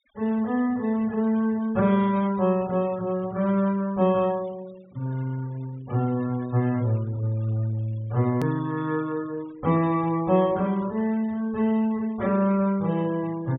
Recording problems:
treble cut off; nothing above 4 kHz
denoising artefacts; signal-to-artefact ratio 26 dB
edit click; at 8.5 s

